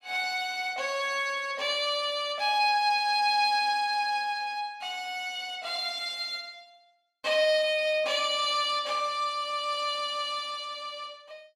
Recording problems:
none

